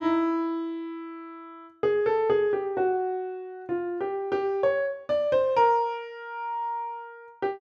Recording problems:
none

